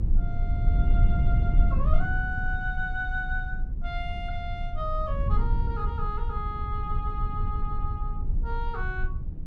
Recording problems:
rumble; below 70 Hz, SNR -5 dB

